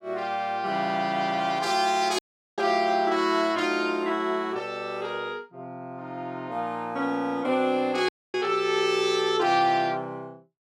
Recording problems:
audio cutting out; at 2 s and at 8 s

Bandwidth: 17 kHz